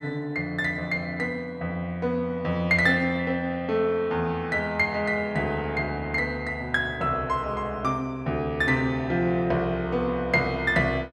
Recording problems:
none

